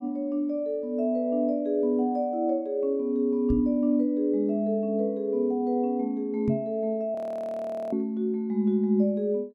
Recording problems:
microphone thump; at 3.5 s and at 6.5 s; peak +1 dB vs average level
frozen audio; at 7 s for 1 s

